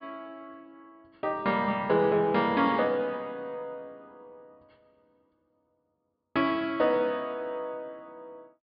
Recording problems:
treble cut off; nothing above 5.1 kHz

